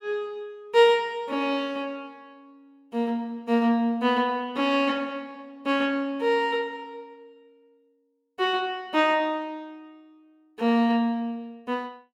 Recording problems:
none

